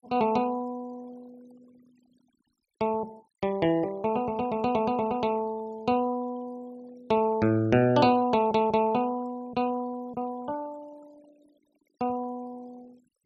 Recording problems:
noise reduction artefacts; signal-to-artefact ratio 26 dB

